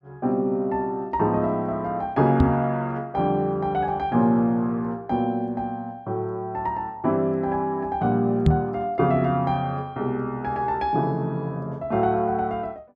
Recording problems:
microphone bump; at 2.5 s and at 8.5 s; peak +9 dB vs average level

